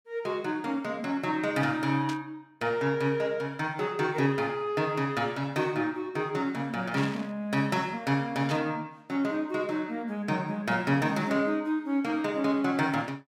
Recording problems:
burst of static; at 2 s, at 7 s and at 8.5 s; peak -5 dB vs average level

